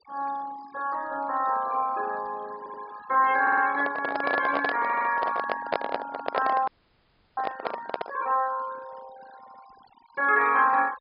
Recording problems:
treble missing; nothing above 5.1 kHz
noise reduction artefacts; signal-to-artefact ratio 20 dB
audio stuttering; 4 times, first at 2.5 s
microphone handling noise; from 3.5 to 8 s; peak +3 dB vs average level
audio freezing; at 6.5 s for 0.5 s

